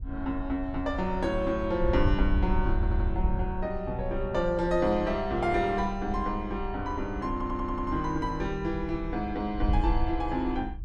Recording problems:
wind on the microphone; below 70 Hz, SNR 5 dB
stutter; at 3 s and at 7.5 s

